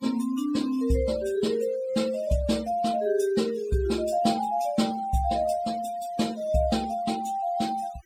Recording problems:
noise reduction artefacts; signal-to-artefact ratio 19 dB

